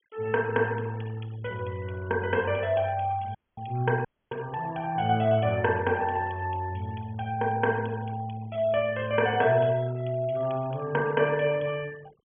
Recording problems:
low-pass filter; nothing above 3.4 kHz
denoising artefacts; signal-to-artefact ratio 22 dB
dropout; at 3.5 s and at 4 s

